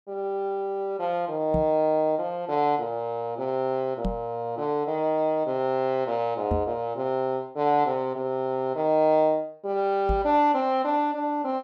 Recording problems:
microphone thump; 4 times, first at 1.5 s; peak 0 dB vs average level

